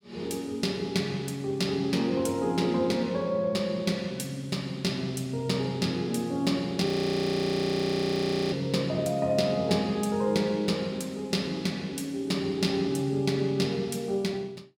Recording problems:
audio freezing; at 7 s for 1.5 s

